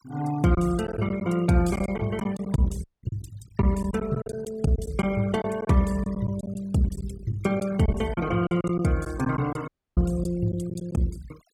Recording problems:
denoising artefacts; signal-to-artefact ratio 19 dB
lost packets; 9% of the sound replaced, filled with silence
dropout; at 3 s and at 9.5 s

